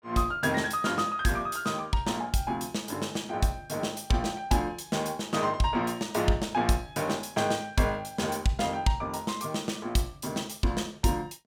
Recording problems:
none

